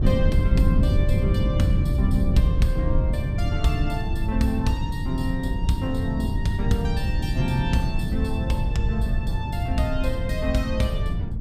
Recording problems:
wind noise; below 120 Hz, SNR -2 dB

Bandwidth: 15 kHz